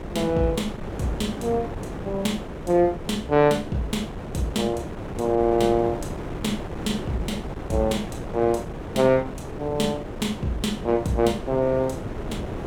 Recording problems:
wind on the microphone; below 550 Hz, SNR 9 dB

